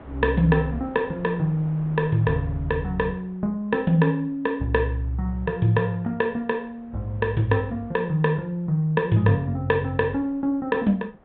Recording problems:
treble missing; nothing above 4 kHz
wind noise; below 770 Hz, SNR 24 dB

